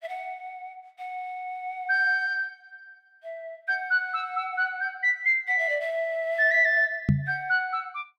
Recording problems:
knock on the microphone; at 7 s; peak +7 dB vs average level

